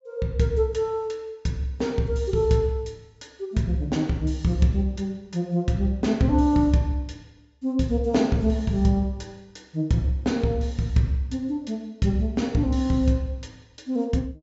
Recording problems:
treble cut off; nothing above 8 kHz

